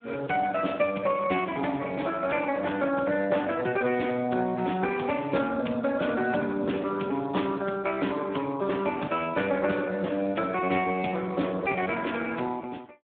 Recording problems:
telephone audio; 220 Hz to 3.4 kHz, Speex

